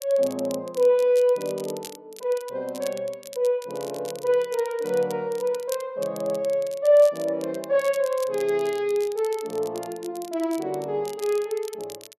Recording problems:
crackling; vinyl, SNR 19 dB

